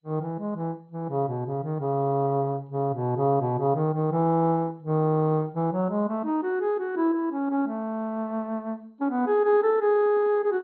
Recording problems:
lossy compression; MP2, log-spectral distance 2 dB, nothing above 4.1 kHz

